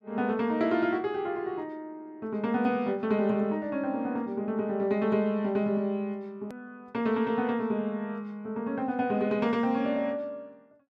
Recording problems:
edit click; at 6.5 s

